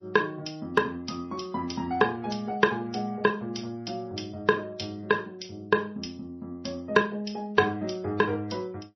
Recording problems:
lossy codec; MP3, then AAC, log-spectral distance 4 dB, nothing above 5.2 kHz

